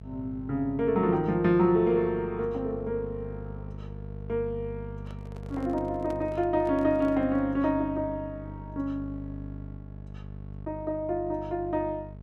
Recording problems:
hum; 50 Hz, harmonics up to 650 Hz, SNR 13 dB
microphone handling noise; from 5 to 7.5 s; peak -10 dB vs average level

